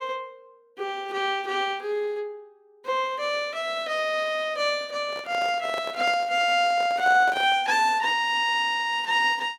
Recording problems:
microphone handling noise; from 5 to 7.5 s; peak -7 dB vs average level

